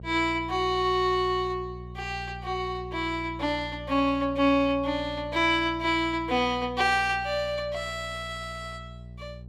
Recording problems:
electrical hum; 60 Hz, harmonics up to 420 Hz, SNR 15 dB

